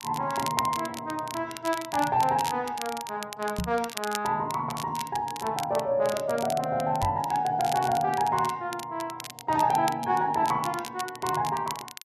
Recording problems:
crackling; vinyl, SNR 12 dB
microphone bump; at 3.5 s and at 7 s; peak 0 dB vs average level

